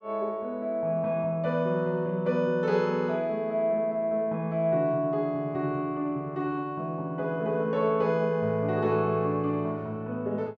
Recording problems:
none

